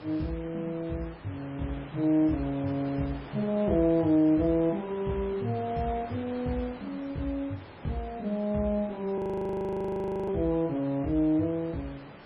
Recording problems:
lossy compression; MP3, log-spectral distance 3 dB, nothing above 13.1 kHz
background hiss; SNR 16 dB
audio freezing; at 9 s for 1 s

